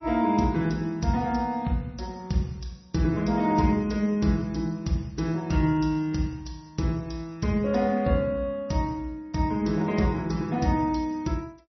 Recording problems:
lossy compression; MP3, log-spectral distance 3 dB, nothing above 5.8 kHz

